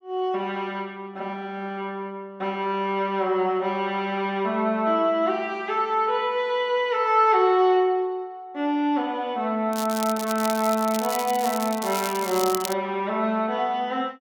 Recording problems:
crackle; from 9.5 to 13 s; loose cable, SNR 9 dB

